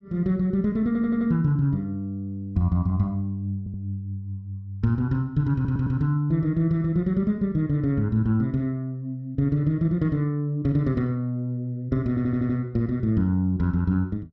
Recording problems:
stutter; 4 times, first at 1 s

